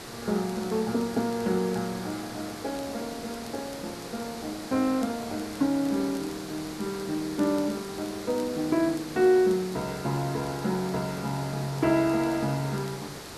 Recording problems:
background hiss; SNR 11 dB
crackling; vinyl, SNR 27 dB

